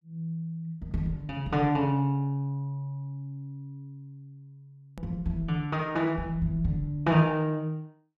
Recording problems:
click at an edit; at 5 s

